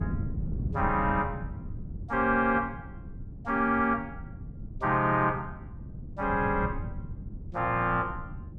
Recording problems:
wind on the microphone; below 160 Hz, SNR 11 dB

